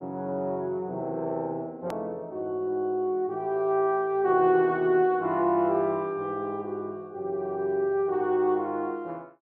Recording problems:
hard cut with a click; at 2 s

